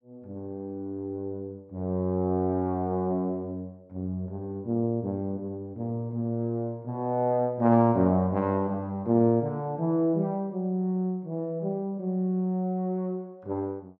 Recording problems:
none

